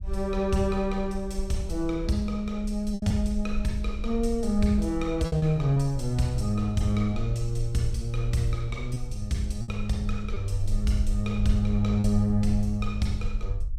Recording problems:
low-frequency rumble; below 52 Hz, SNR 8 dB
lost packets; 3% of the sound replaced, filled with repeated pitch periods

